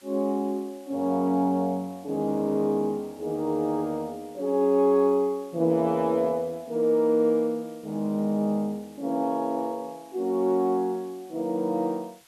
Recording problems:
hiss; slope 0 dB per octave, SNR 28 dB

